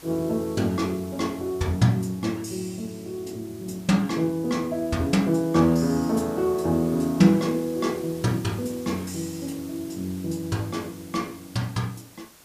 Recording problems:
hiss; slope -2 dB per octave, SNR 21 dB

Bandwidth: 15 kHz